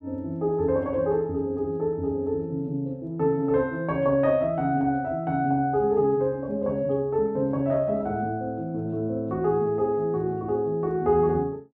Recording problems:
none

